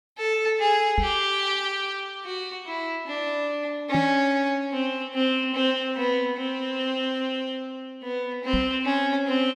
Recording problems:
microphone thump; at 1 s, at 4 s and at 8.5 s; peak +2 dB vs average level

